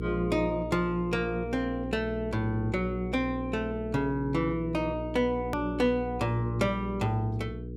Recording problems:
mains hum; 60 Hz, harmonics up to 480 Hz, SNR 8 dB
hard cut with a click; at 5.5 s

